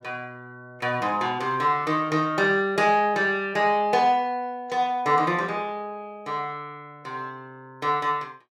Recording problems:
none

